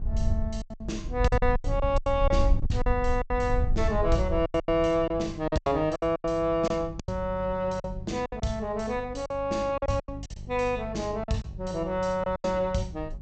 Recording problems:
treble missing; nothing above 8 kHz
hum; 50 Hz, harmonics up to 400 Hz, SNR 15 dB
wind noise; below 68 Hz, SNR 4 dB
lost packets; 13% of the sound replaced, filled with silence

